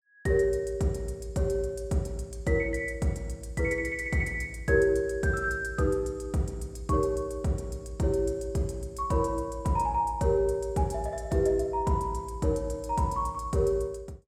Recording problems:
none

